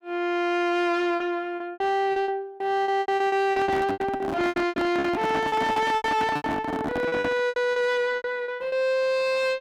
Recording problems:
distortion; soft clipping, signal-to-distortion ratio 7 dB
lost packets; 16% of the sound replaced, filled with repeated pitch periods
handling noise; from 3.5 to 7.5 s; peak +1 dB vs average level

